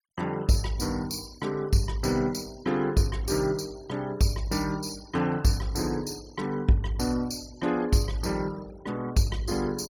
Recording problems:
noise reduction artefacts; signal-to-artefact ratio 21 dB

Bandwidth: 17.5 kHz